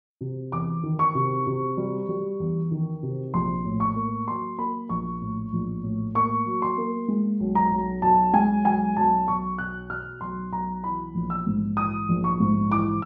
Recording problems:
none

